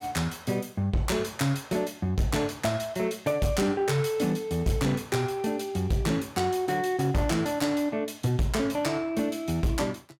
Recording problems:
distorted audio; hard clipping, signal-to-distortion ratio 12 dB

